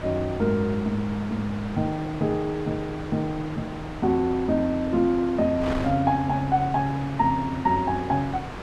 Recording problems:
wind on the microphone; below 1.2 kHz, SNR 11 dB

